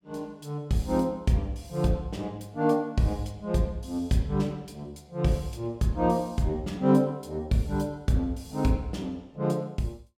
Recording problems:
none

